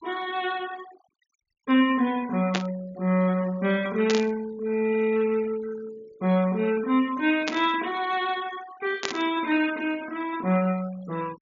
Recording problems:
treble cut off; nothing above 7.1 kHz
denoising artefacts; signal-to-artefact ratio 20 dB
static burst; 4 times, first at 2.5 s; peak +2 dB vs average level

